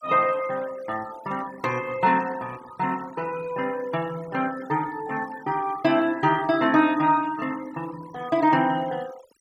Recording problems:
denoising artefacts; signal-to-artefact ratio 20 dB

